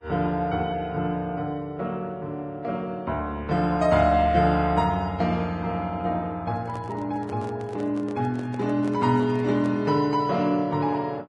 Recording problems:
lossy codec; Vorbis, log-spectral distance 2 dB
handling noise; from 6.5 to 10 s; peak -10 dB vs average level

